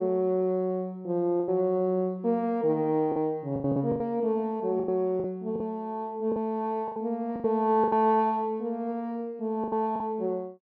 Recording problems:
lost packets; 8% of the sound replaced, filled with the last packet

